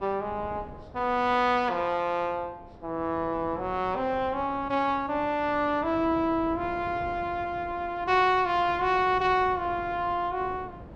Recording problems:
wind noise; below 500 Hz, SNR 18 dB

